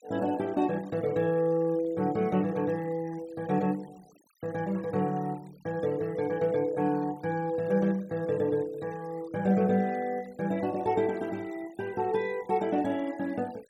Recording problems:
noise reduction artefacts; signal-to-artefact ratio 24 dB

